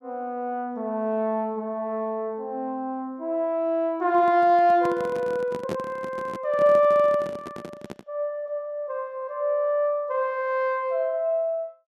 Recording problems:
handling noise; from 4 to 8 s; peak -3 dB vs average level

